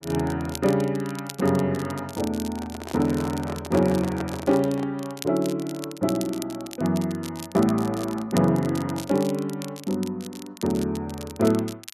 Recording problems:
crackle; vinyl, SNR 16 dB
handling noise; from 2.5 to 5 s; peak -3 dB vs average level

